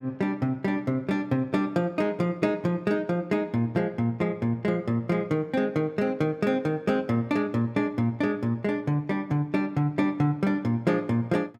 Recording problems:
none

